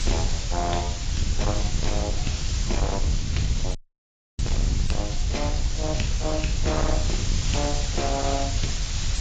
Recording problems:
codec artefacts; AAC, log-spectral distance 12 dB, nothing above 7.3 kHz
distorted audio; hard clipping, signal-to-distortion ratio 8 dB
background hiss; slope +1 dB per octave, SNR 3 dB
rumble; below 92 Hz, SNR -2 dB
audio cutting out; at 4 s for 0.5 s

